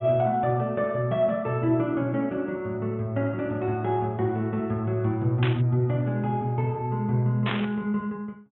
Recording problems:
treble missing; nothing above 3.5 kHz
burst of static; at 5.5 s and at 7.5 s; peak 0 dB vs average level

